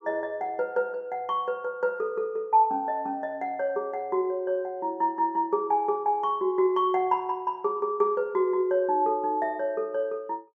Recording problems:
none

